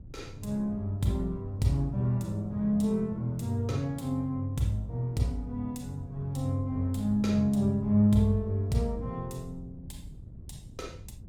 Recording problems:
wind noise; below 140 Hz, SNR 18 dB

